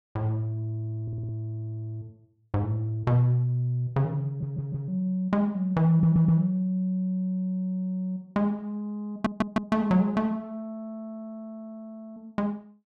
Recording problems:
stutter; 4 times, first at 1 s

